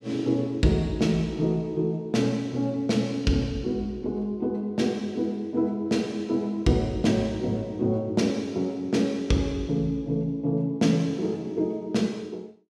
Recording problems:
none

